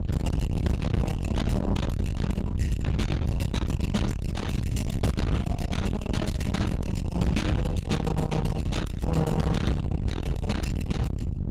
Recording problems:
lossy compression; Opus, log-spectral distance 2 dB, nothing above 17.7 kHz
distorted audio; soft clipping, signal-to-distortion ratio 7 dB
rumble; below 210 Hz, SNR 1 dB

